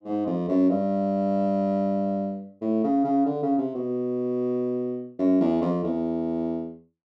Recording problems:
none

